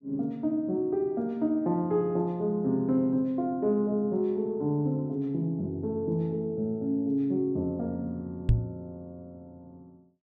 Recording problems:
microphone bump; at 8.5 s; peak +9 dB vs average level

